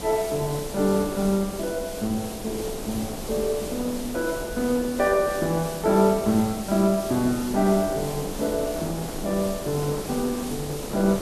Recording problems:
background hiss; slope -1 dB per octave, SNR 12 dB
wind on the microphone; below 610 Hz, SNR 11 dB

